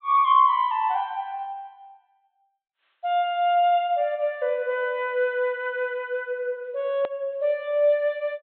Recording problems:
treble cut off; nothing above 4 kHz
hard cut with a click; at 7 s

